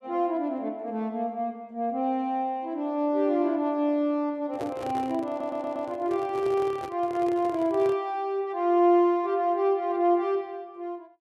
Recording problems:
handling noise; from 4.5 to 8 s; peak -7 dB vs average level
audio stuttering; at 5.5 s

